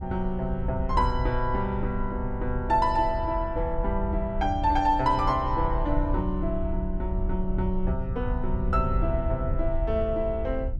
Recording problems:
wind noise; below 70 Hz, SNR 4 dB

